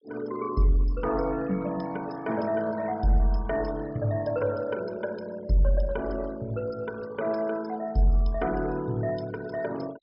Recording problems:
low-pass filter; nothing above 5.5 kHz
denoising artefacts; signal-to-artefact ratio 20 dB

